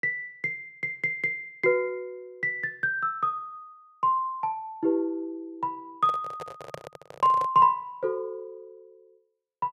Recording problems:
handling noise; from 6 to 7.5 s; peak -6 dB vs average level

